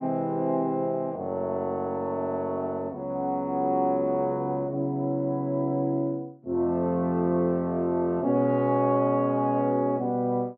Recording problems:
none

